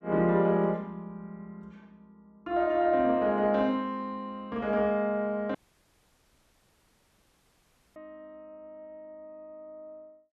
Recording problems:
audio cutting out; at 5.5 s for 2.5 s

